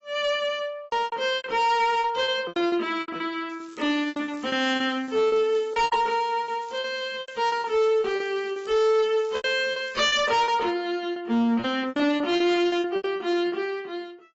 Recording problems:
lossy compression; AAC, log-spectral distance 2 dB, nothing above 7.3 kHz
distorted audio; hard clipping, uneven, signal-to-distortion ratio 11 dB
packet loss; 15% of the sound replaced, filled with repeated pitch periods
crackling; from 3.5 to 6 s and from 6 to 11 s; loose cable, SNR 26 dB

